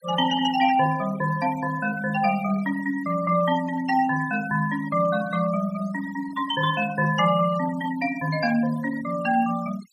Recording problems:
noise reduction artefacts; signal-to-artefact ratio 17 dB

